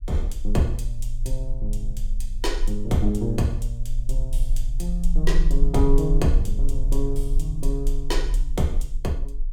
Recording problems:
rumble; below 36 Hz, strongest tone 22 Hz, SNR 1 dB

